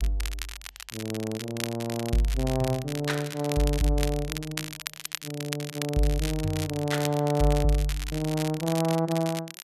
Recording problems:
crackle; vinyl, SNR 9 dB

